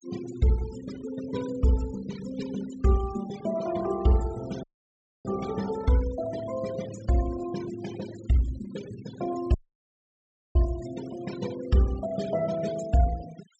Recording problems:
low-pass filter; nothing above 8 kHz
denoising artefacts; signal-to-artefact ratio 15 dB
audio cutting out; at 4.5 s for 0.5 s and at 9.5 s for 1 s

